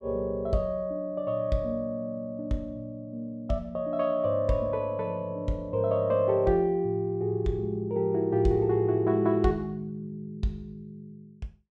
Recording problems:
none

